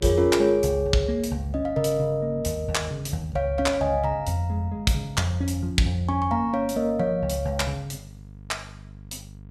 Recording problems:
electrical hum; 50 Hz, harmonics up to 500 Hz, SNR 18 dB

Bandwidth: 14.5 kHz